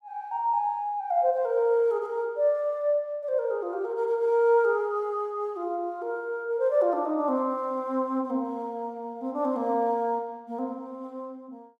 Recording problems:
none

